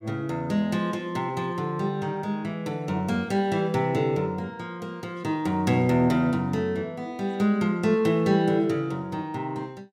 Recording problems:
none

